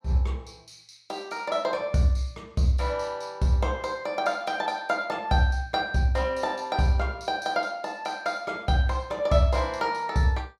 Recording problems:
none

